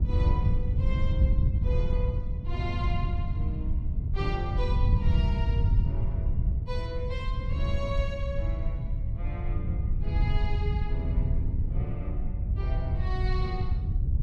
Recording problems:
wind on the microphone; below 98 Hz, SNR -9 dB

